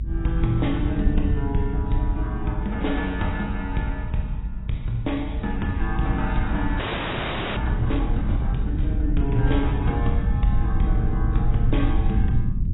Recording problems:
lossy codec; AAC, log-spectral distance 3 dB, nothing above 3.8 kHz
rumble; below 92 Hz, SNR -1 dB
frozen audio; at 7 s for 1 s

